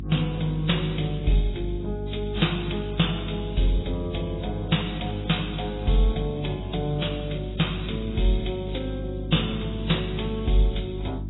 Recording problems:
lossy compression; Vorbis, then AAC, log-spectral distance 7 dB, nothing above 3.8 kHz
electrical hum; 50 Hz, harmonics up to 350 Hz, SNR 7 dB

